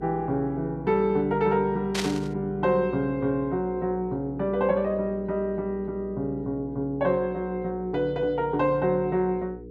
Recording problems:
hum; 60 Hz, harmonics up to 480 Hz, SNR 15 dB
burst of static; at 2 s; peak +2 dB vs average level

